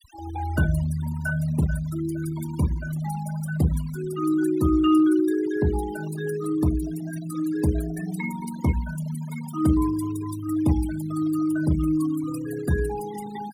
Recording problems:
denoising artefacts; signal-to-artefact ratio 16 dB

